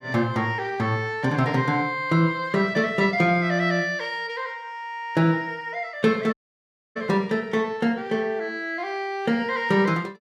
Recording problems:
audio cutting out; at 6.5 s for 0.5 s

